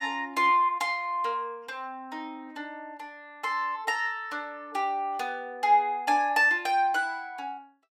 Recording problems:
none

